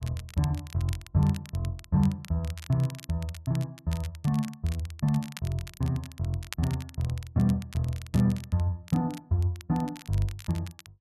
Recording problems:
crackle; vinyl, SNR 18 dB

